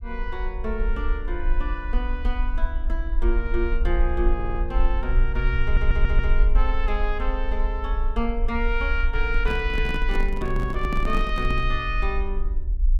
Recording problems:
rumble; below 46 Hz, strongest tone 22 Hz, SNR -2 dB
audio stuttering; at 4.5 s and at 5.5 s
handling noise; from 9.5 to 12 s; peak +3 dB vs average level

